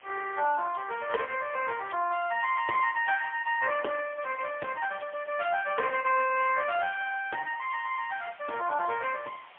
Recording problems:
telephone audio; 370 Hz to 3.3 kHz, AMR-NB, then MP3
hiss; SNR 26 dB

